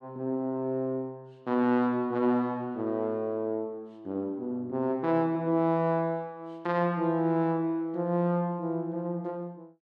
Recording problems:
none

